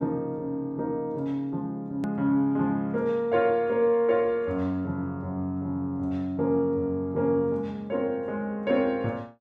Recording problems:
edit click; at 2 s

